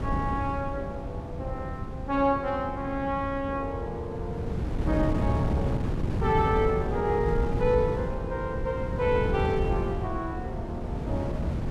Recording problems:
wind on the microphone; below 210 Hz, SNR 2 dB

